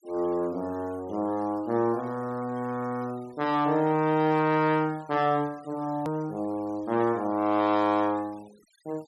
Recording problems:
denoising artefacts; signal-to-artefact ratio 25 dB
click at an edit; at 6 s

